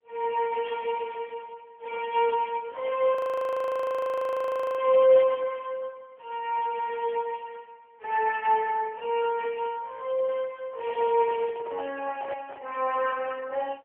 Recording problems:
telephone audio; 300 Hz to 3.1 kHz, AMR-NB
audio freezing; at 3 s for 1.5 s
handling noise; from 11 to 13 s; peak -11 dB vs average level

